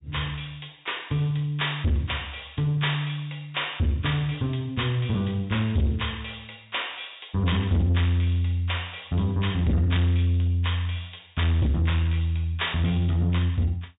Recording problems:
low-pass filter; nothing above 4 kHz
distortion; soft clipping, signal-to-distortion ratio 10 dB

